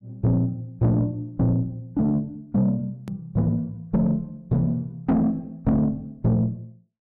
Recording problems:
distortion; soft clipping, signal-to-distortion ratio 10 dB
edit click; at 3 s

